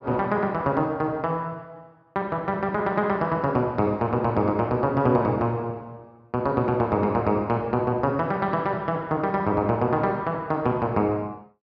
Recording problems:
none

